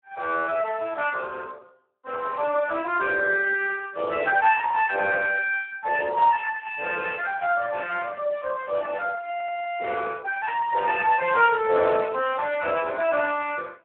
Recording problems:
phone line; 340 Hz to 3.2 kHz, Speex
stutter; at 9.5 s

